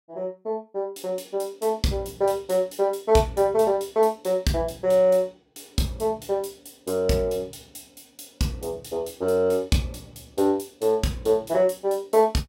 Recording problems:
none

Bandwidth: 16 kHz